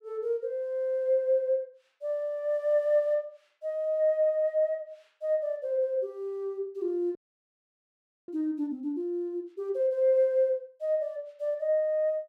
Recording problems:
frozen audio; at 7 s for 1 s

